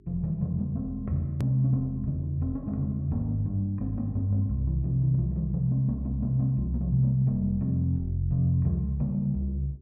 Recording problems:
hum; 50 Hz, harmonics up to 400 Hz, SNR 30 dB
hard cut with a click; at 1.5 s

